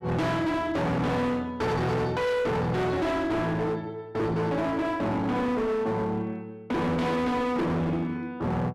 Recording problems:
distortion; hard clipping, uneven, signal-to-distortion ratio 6 dB

